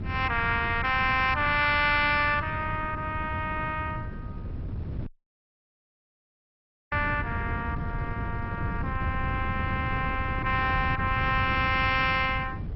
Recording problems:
lossy compression; MP2, log-spectral distance 3 dB, nothing above 5.5 kHz
wind noise; below 170 Hz, SNR 7 dB
audio cutting out; at 5 s for 2 s

